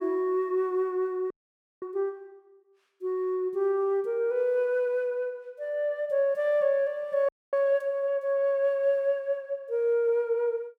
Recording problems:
audio freezing; at 1.5 s for 0.5 s and at 7.5 s

